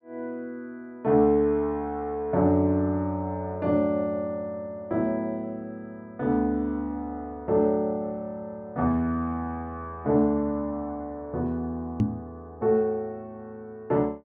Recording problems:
microphone bump; at 12 s; peak +7 dB vs average level

